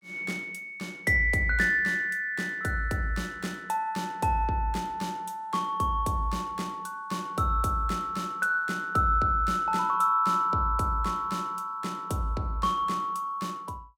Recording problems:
none

